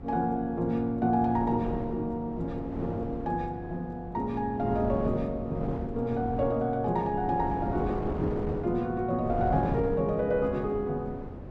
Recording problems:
hum; 50 Hz, harmonics up to 500 Hz, SNR 18 dB
wind on the microphone; below 430 Hz, SNR 8 dB

